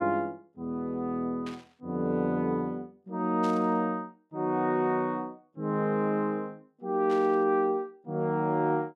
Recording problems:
static burst; at 1.5 s, at 3.5 s and at 7 s; peak -12 dB vs average level

